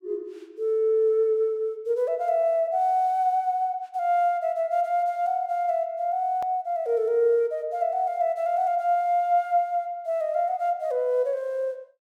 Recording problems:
click at an edit; at 6.5 s

